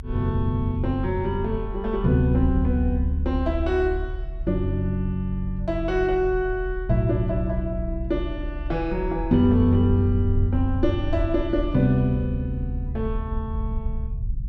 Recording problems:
low-frequency rumble; below 64 Hz, strongest tone 38 Hz, SNR 8 dB

